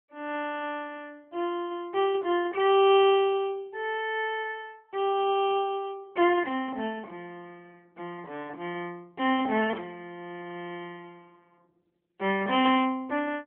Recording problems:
telephone audio; 240 Hz to 3.4 kHz, AMR-NB

